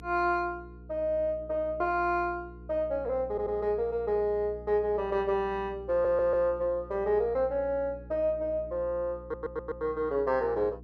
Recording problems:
hum; 60 Hz, harmonics up to 480 Hz, SNR 18 dB
audio stuttering; at 3.5 s, at 6 s and at 9 s

